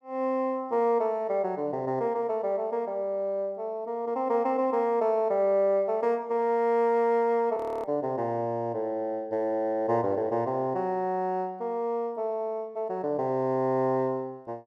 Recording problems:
frozen audio; at 7.5 s

